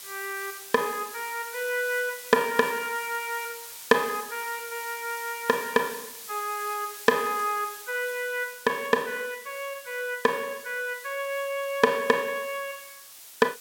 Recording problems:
background hiss; slope +2 dB per octave, SNR 12 dB

